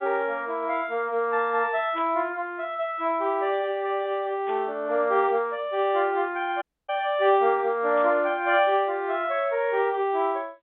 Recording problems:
telephone audio; 260 Hz to 3.9 kHz, G.711
burst of static; at 2 s, at 4.5 s and at 8 s; peak -14 dB vs average level
dropout; at 6.5 s

